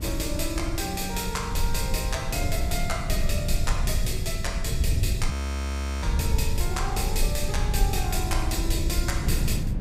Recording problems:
low-frequency rumble; below 84 Hz, SNR -1 dB
wind noise; below 190 Hz, SNR 9 dB
frozen audio; at 5.5 s for 0.5 s

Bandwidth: 15.5 kHz